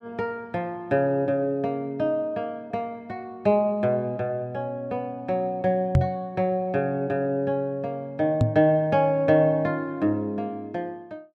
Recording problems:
microphone bump; at 6 s and at 8.5 s; peak +9 dB vs average level

